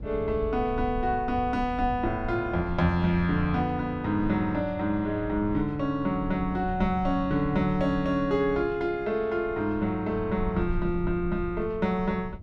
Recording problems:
rumble; below 100 Hz, SNR 12 dB

